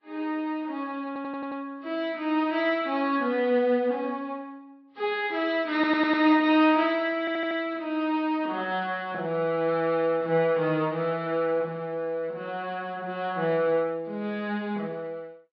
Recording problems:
treble missing; nothing above 5.5 kHz
lossy compression; Vorbis, log-spectral distance 2 dB
audio stuttering; at 1 s, at 5.5 s and at 7 s

